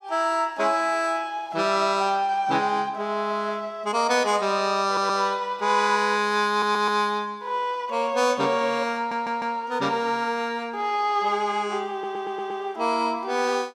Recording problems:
stutter; 4 times, first at 5 s

